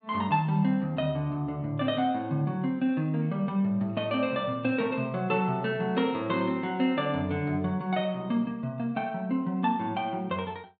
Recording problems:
treble missing; nothing above 4.4 kHz

